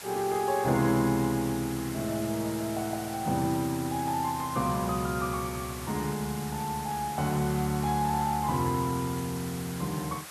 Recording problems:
hiss; SNR 11 dB

